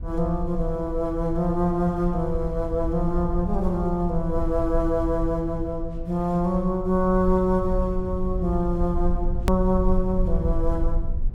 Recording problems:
low-frequency rumble; below 58 Hz, SNR 6 dB
hard cut with a click; at 9.5 s

